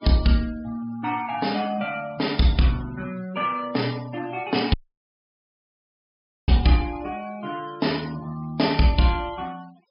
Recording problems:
treble missing; nothing above 5.5 kHz
denoising artefacts; signal-to-artefact ratio 21 dB
dropout; at 4.5 s for 1.5 s

